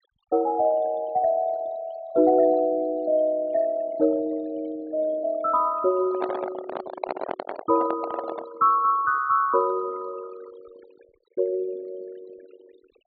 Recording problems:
treble missing; nothing above 4.4 kHz
denoising artefacts; signal-to-artefact ratio 20 dB
microphone handling noise; from 6 to 8.5 s; peak -1 dB vs average level

